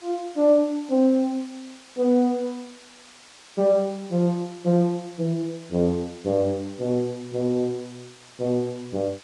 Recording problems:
codec artefacts; Vorbis, log-spectral distance 4 dB
hiss; slope 0 dB per octave, SNR 23 dB

